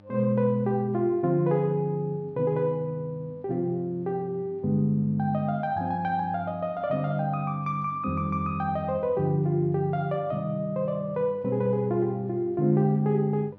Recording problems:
hum; 50 Hz, harmonics up to 1.5 kHz, SNR 25 dB

